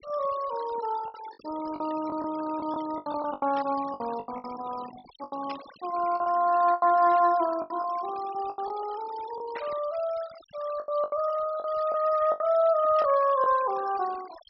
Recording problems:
low-pass filter; nothing above 5.5 kHz
noise reduction artefacts; signal-to-artefact ratio 19 dB
packet loss; 10% of the sound replaced, filled with the last packet
burst of static; 4 times, first at 3.5 s; peak -8 dB vs average level

